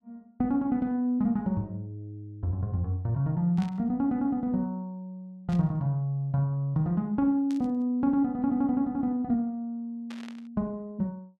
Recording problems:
static burst; 4 times, first at 3.5 s; peak -13 dB vs average level

